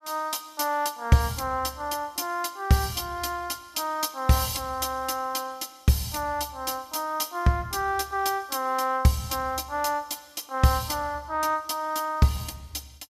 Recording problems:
none

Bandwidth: 15.5 kHz